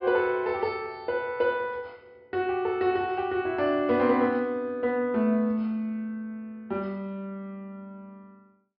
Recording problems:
treble missing; nothing above 5.5 kHz

